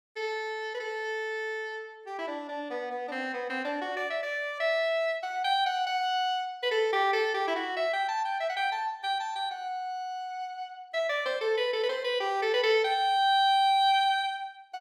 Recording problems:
none

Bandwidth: 16.5 kHz